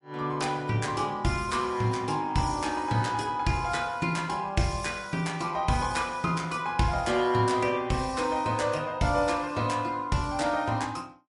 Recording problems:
codec artefacts; MP3, log-spectral distance 3 dB, nothing above 11 kHz

